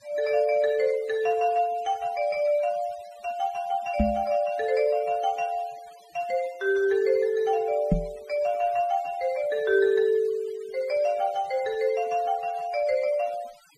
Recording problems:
noise reduction artefacts; signal-to-artefact ratio 24 dB
microphone bump; at 4 s and at 8 s; peak +7 dB vs average level

